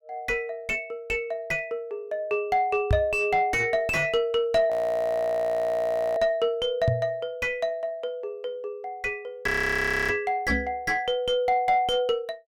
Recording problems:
distorted audio; soft clipping, signal-to-distortion ratio 6 dB
knock on the microphone; at 3 s, at 7 s and at 11 s; peak +5 dB vs average level
frozen audio; at 4.5 s for 1.5 s and at 9.5 s for 0.5 s

